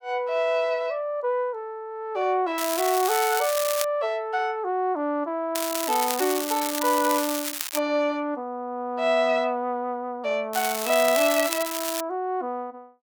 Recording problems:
crackle; from 2.5 to 4 s, from 5.5 to 8 s and from 11 to 12 s; loose cable, SNR 4 dB

